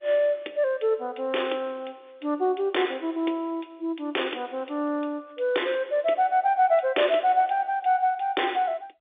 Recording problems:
telephone audio; 280 Hz to 3.6 kHz, G.711

